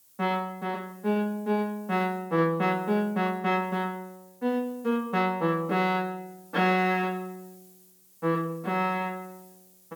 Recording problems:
background hiss; SNR 27 dB

